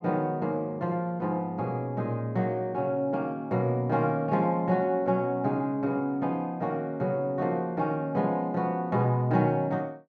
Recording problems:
none

